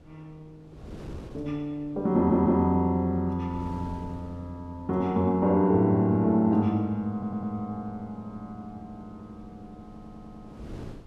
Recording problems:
wind on the microphone; below 380 Hz, SNR 22 dB
audio stuttering; at 2 s, at 7 s and at 10 s

